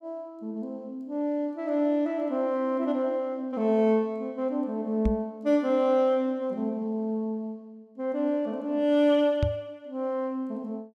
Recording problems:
microphone bump; at 5 s and at 9.5 s; peak +4 dB vs average level

